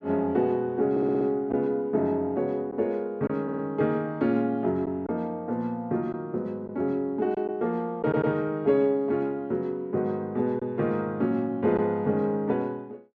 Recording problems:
lost packets; 1.3% of the sound replaced, filled with silence
stutter; at 1 s, at 3.5 s and at 8 s

